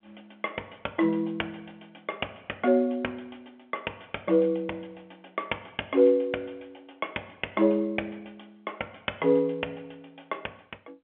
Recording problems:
phone line; 260 Hz to 3.3 kHz, G.711

